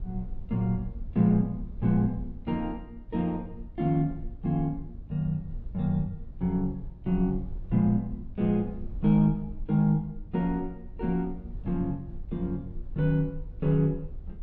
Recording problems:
rumble; below 62 Hz, SNR 14 dB

